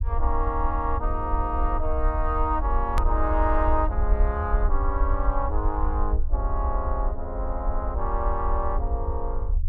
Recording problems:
rumble; below 58 Hz, SNR -1 dB
edit click; at 3 s

